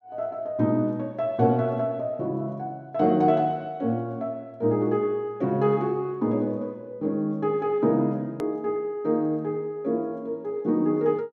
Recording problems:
hard cut with a click; at 8.5 s

